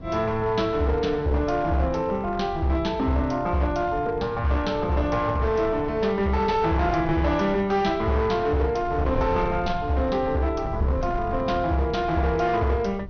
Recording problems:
treble missing; nothing above 6.3 kHz
distorted audio; hard clipping, uneven, signal-to-distortion ratio 12 dB
wind noise; below 150 Hz, SNR 13 dB

